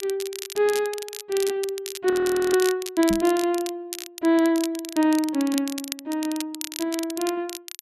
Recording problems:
crackle; vinyl, SNR 10 dB
audio freezing; at 2 s
microphone thump; at 3 s; peak -2 dB vs average level

